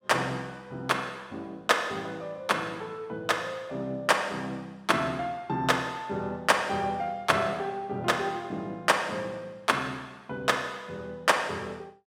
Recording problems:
none

